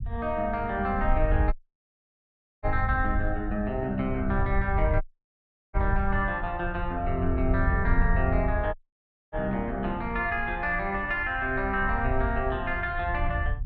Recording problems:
rumble; below 76 Hz, SNR 4 dB
audio cutting out; at 1.5 s for 1 s, at 5 s for 0.5 s and at 8.5 s for 0.5 s

